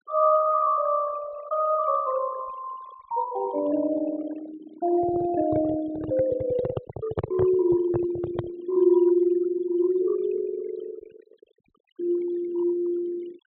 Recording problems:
treble cut off; nothing above 4 kHz
noise reduction artefacts; signal-to-artefact ratio 17 dB
microphone handling noise; from 5 to 8.5 s; peak +2 dB vs average level

